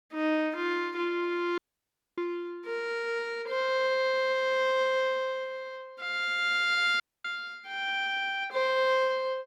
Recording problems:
dropout; at 1.5 s for 0.5 s and at 7 s

